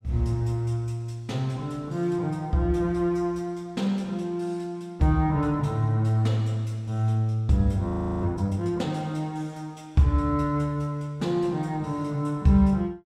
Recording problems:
audio freezing; at 8 s

